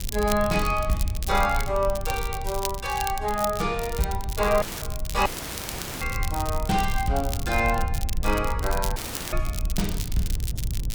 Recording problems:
rumble; below 74 Hz, SNR 5 dB
crackle; vinyl, SNR 9 dB
audio cutting out; at 4.5 s, at 5.5 s for 1 s and at 9 s

